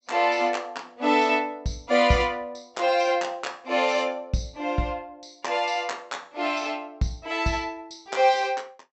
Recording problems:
low-pass filter; nothing above 7.9 kHz

